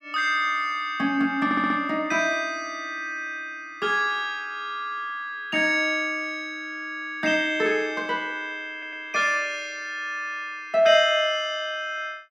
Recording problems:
stutter; at 1.5 s and at 8.5 s

